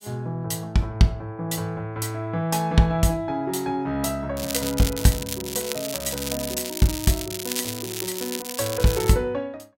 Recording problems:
crackle; from 4.5 to 9 s; loose cable, SNR 6 dB

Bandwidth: 16 kHz